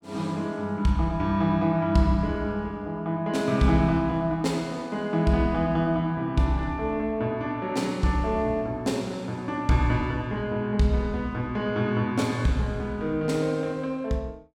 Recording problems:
none

